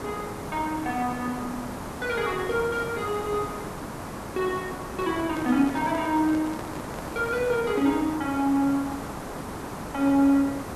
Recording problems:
hiss; SNR 9 dB
microphone handling noise; from 5 to 8 s; peak -7 dB vs average level

